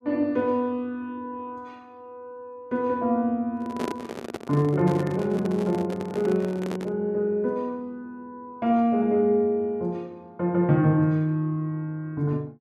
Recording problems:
handling noise; from 3.5 to 7 s; peak -2 dB vs average level

